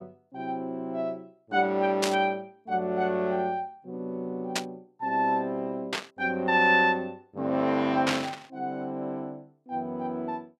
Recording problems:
burst of static; 4 times, first at 2 s; peak +4 dB vs average level

